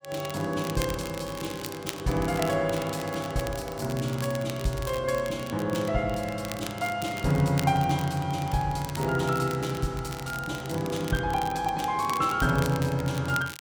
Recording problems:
crackle; vinyl, SNR 14 dB

